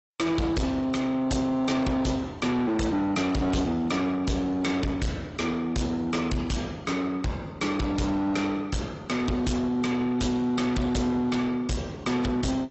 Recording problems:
codec artefacts; AAC, log-spectral distance 3 dB, nothing above 7.8 kHz
distorted audio; soft clipping, signal-to-distortion ratio 6 dB

